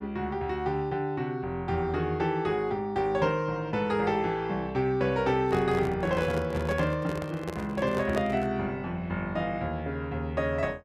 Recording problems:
handling noise; from 5.5 to 8.5 s; peak -2 dB vs average level

